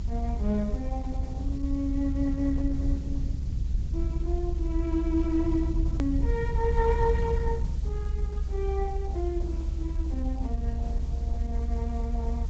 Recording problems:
treble cut off; nothing above 8 kHz
codec artefacts; Opus, log-spectral distance 2 dB
hiss; slope -1 dB per octave, SNR 25 dB
low-frequency rumble; below 66 Hz, SNR -1 dB
click at an edit; at 6 s

